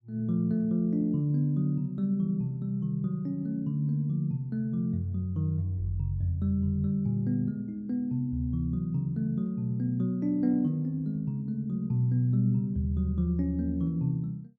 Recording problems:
none

